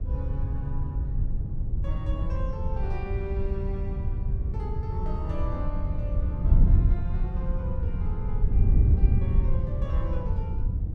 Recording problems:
wind on the microphone; below 86 Hz, SNR -11 dB

